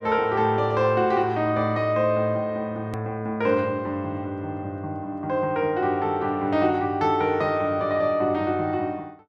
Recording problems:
edit click; at 3 s

